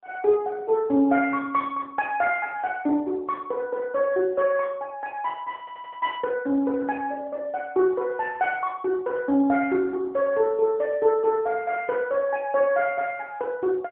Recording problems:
phone line; 220 Hz to 3.3 kHz, AMR-NB
audio stuttering; at 5.5 s

